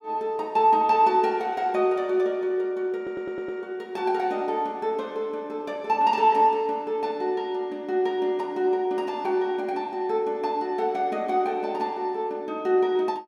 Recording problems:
stutter; at 3 s

